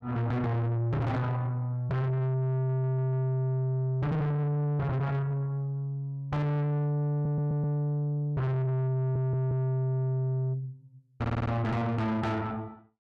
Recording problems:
distorted audio; soft clipping, signal-to-distortion ratio 6 dB
audio stuttering; 4 times, first at 2.5 s

